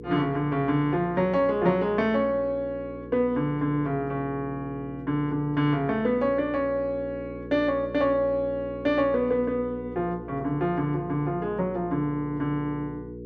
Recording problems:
hum; 60 Hz, harmonics up to 480 Hz, SNR 13 dB

